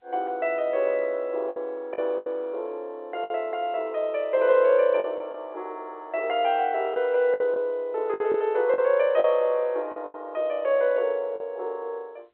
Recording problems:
phone line; 340 Hz to 3.3 kHz, G.711
packet loss; 6% of the sound replaced, filled with the last packet

